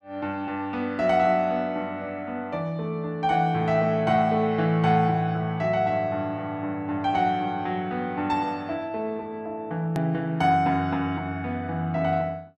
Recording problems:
hard cut with a click; at 10 s

